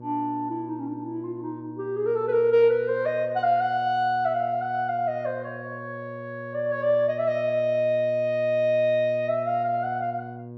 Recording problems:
hum; 60 Hz, harmonics up to 960 Hz, SNR 16 dB

